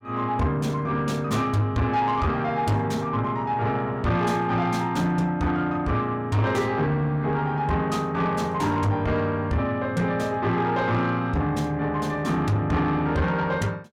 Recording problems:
distortion; soft clipping, signal-to-distortion ratio 11 dB

